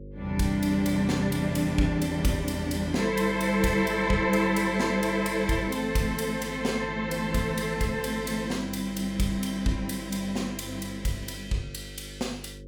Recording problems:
hum; 50 Hz, harmonics up to 550 Hz, SNR 16 dB

